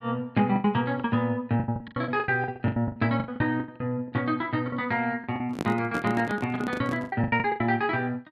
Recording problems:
lost packets; 18% of the sound replaced, filled with the last packet
microphone handling noise; from 5.5 to 7 s; peak +1 dB vs average level

